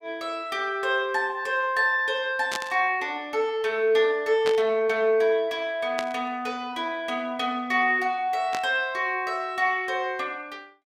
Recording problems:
burst of static; 4 times, first at 2.5 s; peak -2 dB vs average level

